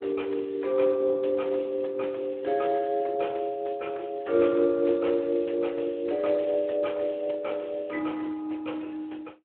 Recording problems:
phone line; 300 Hz to 3.8 kHz, Speex

